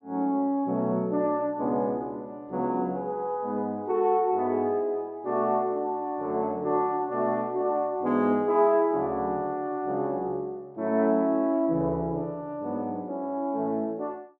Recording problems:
none

